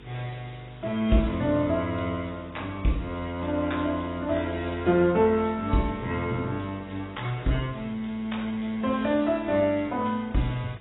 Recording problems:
lossy compression; AAC, log-spectral distance 10 dB, nothing above 3.8 kHz
hum; 50 Hz, harmonics up to 500 Hz, SNR 24 dB
hiss; SNR 27 dB

